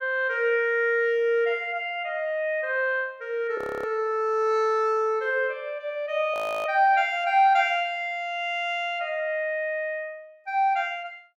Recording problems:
audio freezing; at 3.5 s and at 6.5 s

